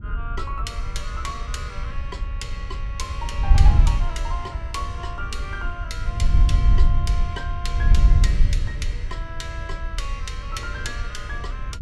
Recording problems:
wind on the microphone; below 70 Hz, SNR -8 dB

